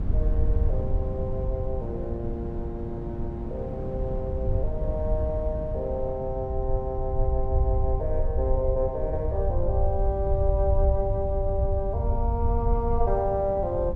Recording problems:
low-frequency rumble; below 76 Hz, SNR 0 dB
wind noise; below 230 Hz, SNR 8 dB

